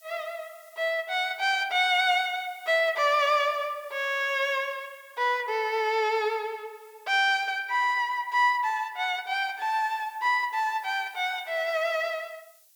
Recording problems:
background hiss; slope +5 dB per octave, SNR 29 dB

